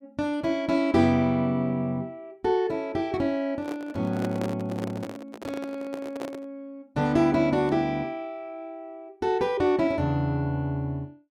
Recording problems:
microphone handling noise; from 3.5 to 6.5 s; peak -2 dB vs average level

